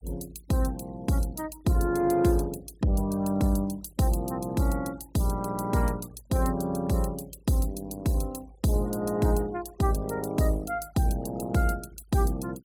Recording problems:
denoising artefacts; signal-to-artefact ratio 24 dB

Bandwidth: 16.5 kHz